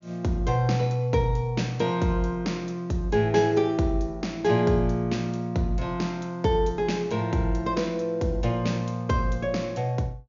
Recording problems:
low-pass filter; nothing above 7 kHz

